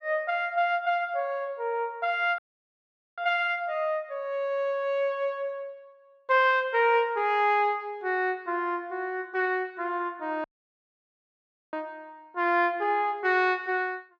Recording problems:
audio cutting out; at 2.5 s for 1 s and at 10 s for 1.5 s

